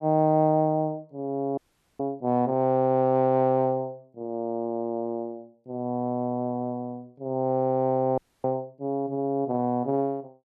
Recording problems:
audio freezing; at 1.5 s and at 8 s

